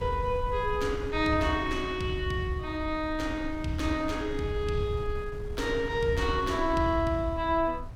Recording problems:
wind on the microphone; below 92 Hz, SNR 11 dB

